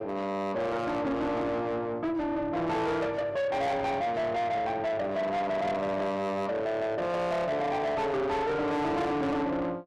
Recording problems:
distortion; soft clipping, signal-to-distortion ratio 8 dB

